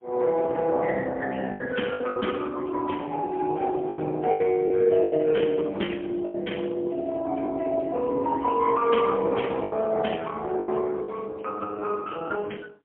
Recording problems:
phone line; 220 Hz to 3.3 kHz, AMR-NB, then MP3
lost packets; 7% of the sound replaced, filled with the last packet

